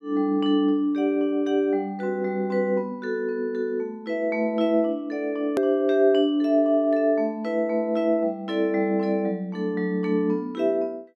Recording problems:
hard cut with a click; at 5.5 s

